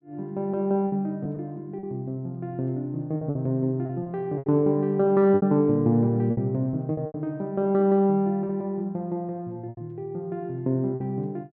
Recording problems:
packet loss; 7% of the sound replaced, filled with repeated pitch periods

